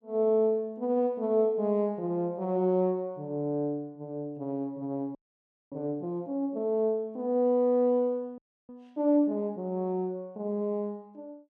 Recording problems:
frozen audio; at 5 s for 0.5 s and at 8.5 s

